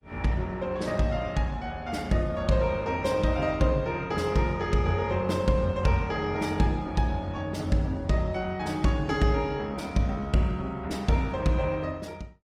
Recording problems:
lossy compression; Opus, log-spectral distance 2 dB, nothing above 19 kHz

